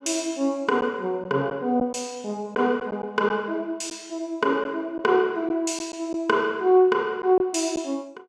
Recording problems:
lost packets; 3% of the sound replaced, filled with silence

